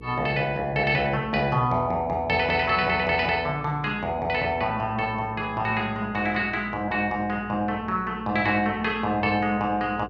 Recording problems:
hum; 60 Hz, harmonics up to 480 Hz, SNR 19 dB

